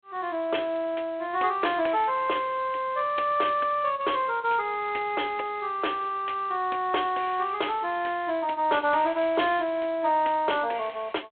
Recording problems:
telephone audio; 240 Hz to 3.4 kHz, G.726

